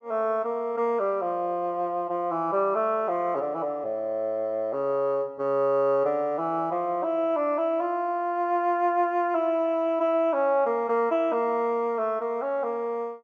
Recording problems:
none

